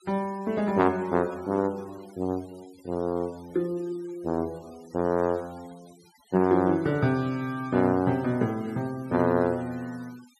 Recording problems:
noise reduction artefacts; signal-to-artefact ratio 25 dB

